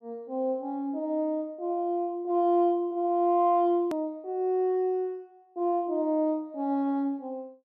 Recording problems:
hard cut with a click; at 4 s

